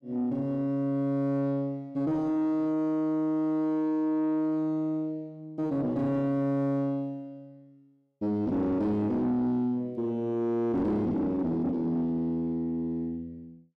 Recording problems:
distortion; soft clipping, signal-to-distortion ratio 11 dB

